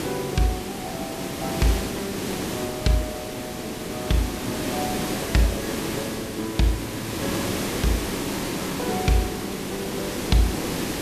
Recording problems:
background hiss; SNR 1 dB

